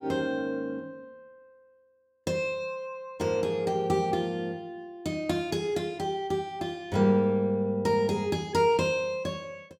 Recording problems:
none

